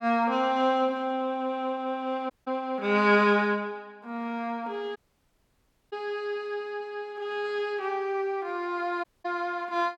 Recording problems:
audio cutting out; at 2.5 s, at 5 s for 1 s and at 9 s

